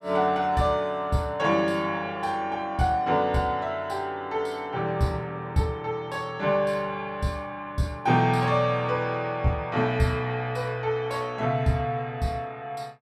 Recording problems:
none

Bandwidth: 15 kHz